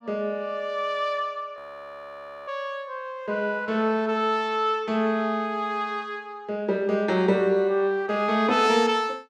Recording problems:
frozen audio; at 1.5 s for 1 s

